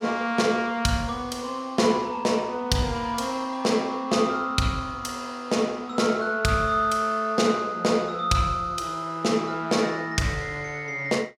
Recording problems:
none

